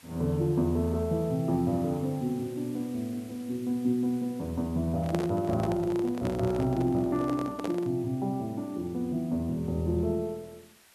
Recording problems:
hiss; slope 0 dB per octave, SNR 25 dB
microphone handling noise; from 5 to 8 s; peak 0 dB vs average level

